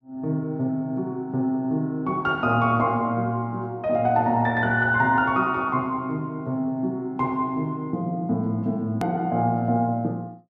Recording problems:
hard cut with a click; at 9 s

